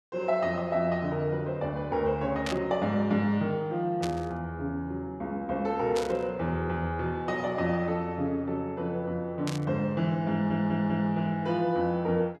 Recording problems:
burst of static; 4 times, first at 2.5 s; peak -2 dB vs average level
stutter; at 10 s

